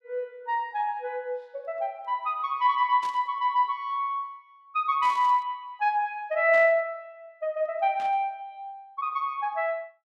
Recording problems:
burst of static; 4 times, first at 3 s; peak -12 dB vs average level

